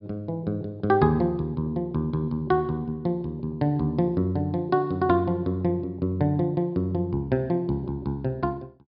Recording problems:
treble missing; nothing above 5.5 kHz

